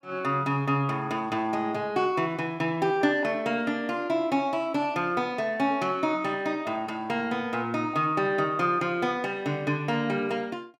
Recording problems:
none

